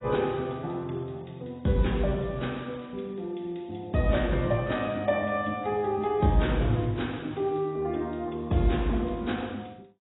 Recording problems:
lossy codec; AAC, log-spectral distance 6 dB, nothing above 3.8 kHz

